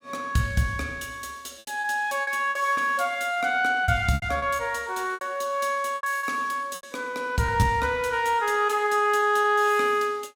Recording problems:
lost packets; 8% of the sound replaced, filled with repeated pitch periods

